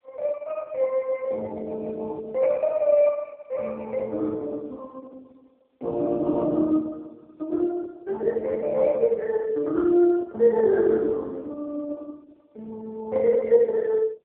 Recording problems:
phone line; 320 Hz to 2.3 kHz, AMR-NB

